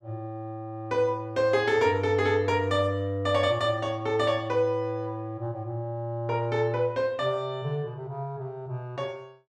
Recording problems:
none

